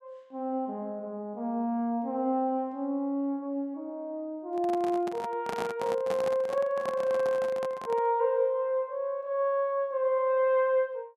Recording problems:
handling noise; from 4.5 to 8 s; peak -2 dB vs average level

